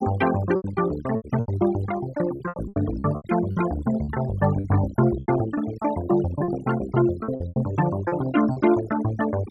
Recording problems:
noise reduction artefacts; signal-to-artefact ratio 13 dB
lost packets; 11% of the sound replaced, filled with repeated pitch periods

